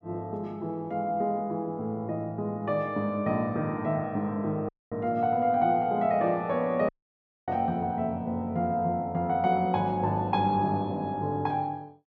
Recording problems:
dropout; at 4.5 s and at 7 s for 0.5 s

